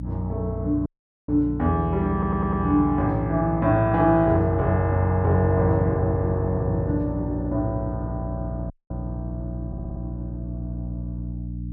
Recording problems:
mains hum; 60 Hz, harmonics up to 300 Hz, SNR 9 dB
audio cutting out; at 1 s and at 8.5 s
stutter; at 2 s and at 9.5 s

